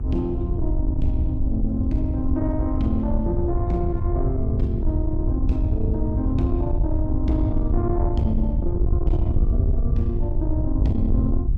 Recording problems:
distorted audio; soft clipping, signal-to-distortion ratio 11 dB
hum; 60 Hz, harmonics up to 840 Hz, SNR 14 dB
low-frequency rumble; below 92 Hz, SNR -2 dB

